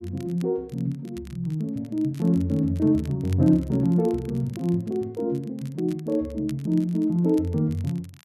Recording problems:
crackle; vinyl, SNR 27 dB

